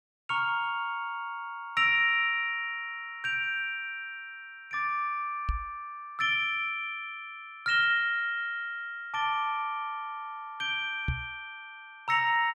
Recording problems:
knock on the microphone; at 5.5 s and at 11 s; peak +2 dB vs average level

